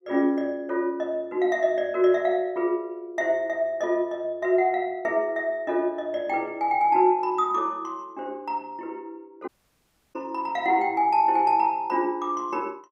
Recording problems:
audio cutting out; at 9.5 s for 0.5 s

